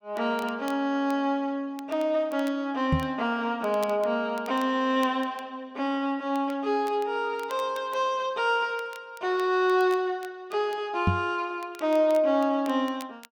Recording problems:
crackle; vinyl, SNR 24 dB
knock on the microphone; at 3 s and at 11 s; peak +6 dB vs average level

